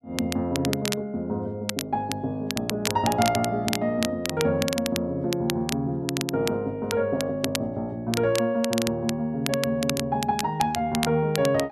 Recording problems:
crackling; vinyl, SNR 7 dB

